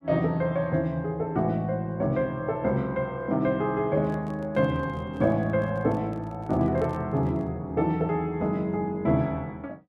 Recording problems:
handling noise; from 4 to 7.5 s; peak -11 dB vs average level

